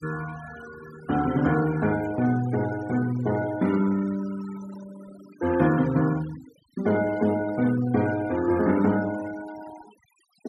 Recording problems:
noise reduction artefacts; signal-to-artefact ratio 18 dB

